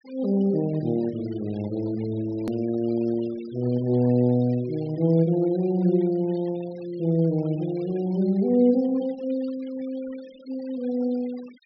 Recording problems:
treble cut off; nothing above 5.5 kHz
noise reduction artefacts; signal-to-artefact ratio 24 dB
edit click; at 2.5 s

